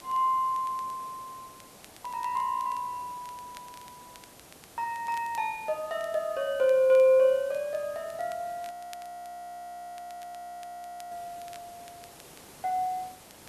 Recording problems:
hiss; slope -4 dB per octave, SNR 22 dB
crackling; vinyl, SNR 27 dB
frozen audio; at 8.5 s for 2.5 s

